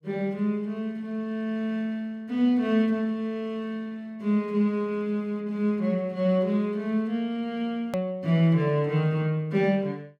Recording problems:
hard cut with a click; at 8 s

